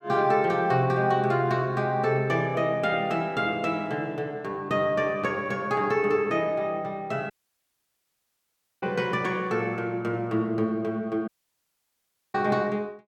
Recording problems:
dropout; at 7.5 s for 1.5 s and at 11 s for 1 s

